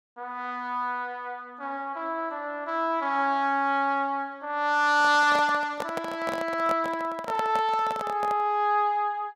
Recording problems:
microphone handling noise; from 5 to 8.5 s; peak -3 dB vs average level

